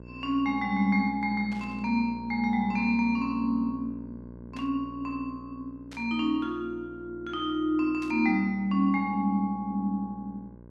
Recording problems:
mains hum; 60 Hz, harmonics up to 1.1 kHz, SNR 18 dB
burst of static; 4 times, first at 1.5 s; peak -14 dB vs average level

